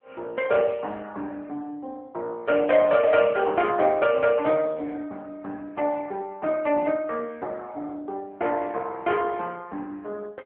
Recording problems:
telephone audio; 240 Hz to 3.5 kHz, AMR-NB

